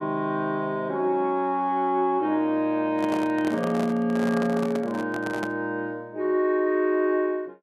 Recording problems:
handling noise; from 3 to 5.5 s; peak -3 dB vs average level

